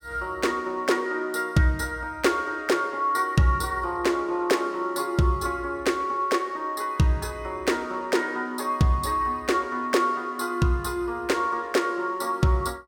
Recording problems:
none

